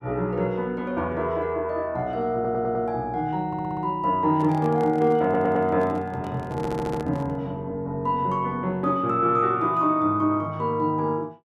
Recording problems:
audio stuttering; 4 times, first at 2.5 s
handling noise; from 4.5 to 7.5 s; peak -8 dB vs average level

